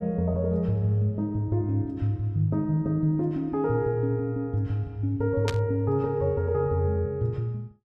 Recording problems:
burst of static; at 5.5 s; peak -1 dB vs average level

